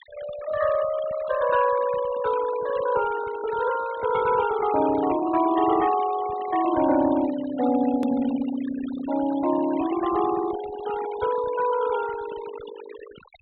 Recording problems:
low-pass filter; nothing above 4 kHz
denoising artefacts; signal-to-artefact ratio 15 dB
click at an edit; at 8 s

